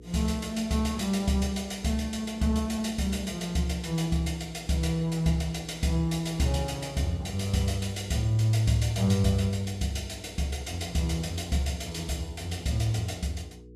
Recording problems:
electrical hum; 60 Hz, harmonics up to 480 Hz, SNR 20 dB

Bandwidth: 14.5 kHz